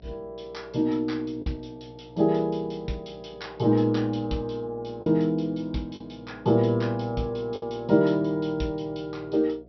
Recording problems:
low-pass filter; nothing above 5.7 kHz
hum; 60 Hz, harmonics up to 720 Hz, SNR 26 dB
packet loss; 1.9% of the sound replaced, filled with the last packet

